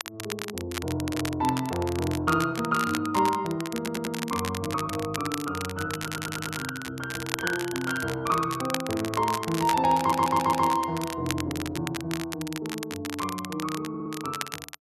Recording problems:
crackling; vinyl, SNR 8 dB
audio stuttering; 4 times, first at 4 s

